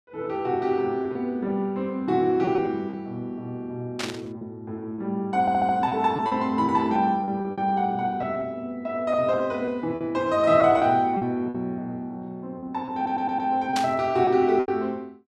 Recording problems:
packet loss; 6% of the sound replaced, filled with repeated pitch periods
burst of static; at 4 s and at 14 s; peak 0 dB vs average level
stutter; at 5.5 s and at 13 s

